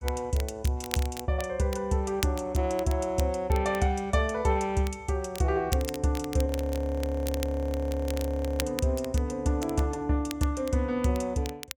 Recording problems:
crackle; vinyl, SNR 13 dB
audio freezing; at 6.5 s for 2 s

